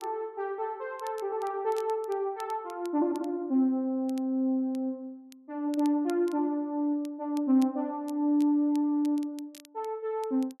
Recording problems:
crackle; vinyl, SNR 25 dB

